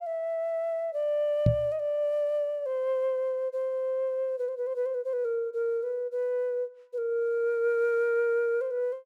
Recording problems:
knock on the microphone; at 1.5 s; peak +9 dB vs average level

